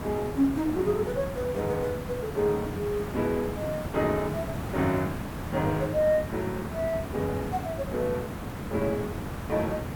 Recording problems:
background hiss; slope -7 dB per octave, SNR 6 dB

